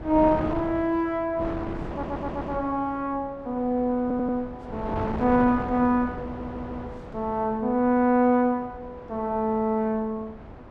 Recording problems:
wind on the microphone; below 730 Hz, SNR 12 dB
audio stuttering; at 2 s, at 4 s and at 6.5 s

